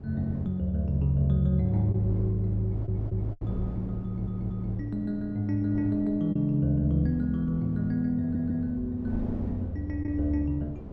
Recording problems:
wind noise; below 310 Hz, SNR 13 dB
packet loss; 1.7% of the sound replaced, filled with the last packet
audio stuttering; at 2.5 s, at 4 s and at 8 s

